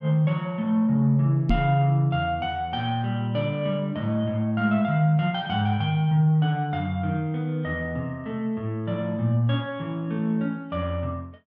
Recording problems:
knock on the microphone; at 1.5 s; peak +4 dB vs average level

